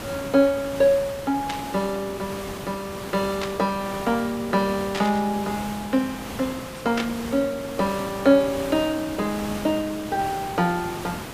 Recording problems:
background hiss; slope -4 dB per octave, SNR 10 dB
burst of static; 4 times, first at 1.5 s; peak -1 dB vs average level

